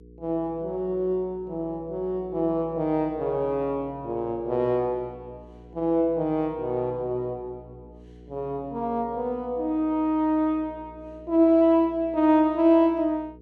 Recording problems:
electrical hum; 60 Hz, harmonics up to 480 Hz, SNR 23 dB

